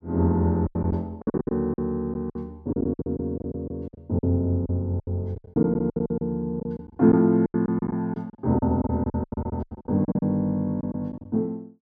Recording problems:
lost packets; 18% of the sound replaced, filled with silence

